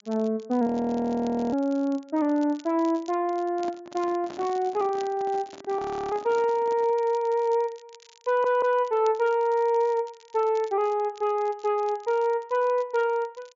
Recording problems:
low-pass filter; nothing above 7.2 kHz
crackle; vinyl, SNR 27 dB
frozen audio; at 0.5 s for 1 s and at 6 s
microphone handling noise; from 3.5 to 7 s; peak -10 dB vs average level
stutter; at 8.5 s

